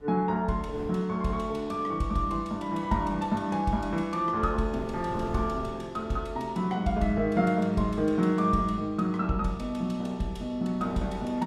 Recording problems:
wind noise; below 390 Hz, SNR 19 dB

